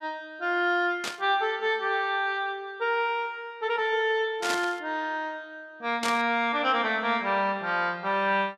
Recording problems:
static burst; at 1 s, at 4.5 s and at 6 s; peak 0 dB vs average level

